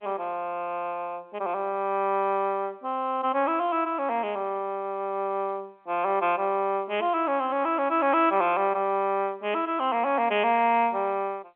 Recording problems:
telephone audio; 220 Hz to 3.5 kHz, G.711

